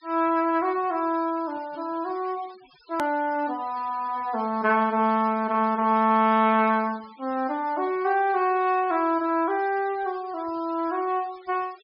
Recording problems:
low-pass filter; nothing above 5.5 kHz
denoising artefacts; signal-to-artefact ratio 24 dB
click at an edit; at 3 s

